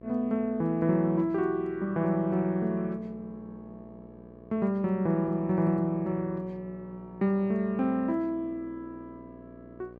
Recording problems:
electrical hum; 60 Hz, harmonics up to 1.3 kHz, SNR 21 dB

